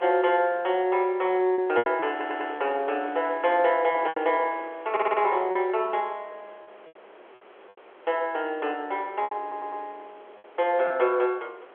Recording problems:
phone line; 320 Hz to 3.5 kHz, G.711
wind noise; below 1.4 kHz, SNR 20 dB
packet loss; 6% of the sound replaced, filled with repeated pitch periods
audio stuttering; at 2 s, at 5 s and at 9.5 s

